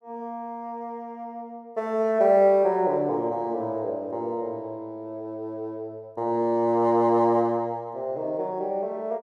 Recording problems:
none

